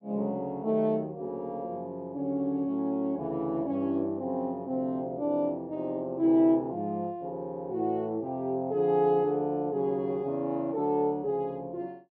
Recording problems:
none

